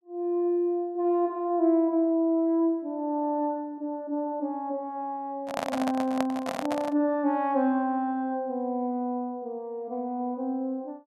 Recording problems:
handling noise; from 5.5 to 7 s; peak +2 dB vs average level

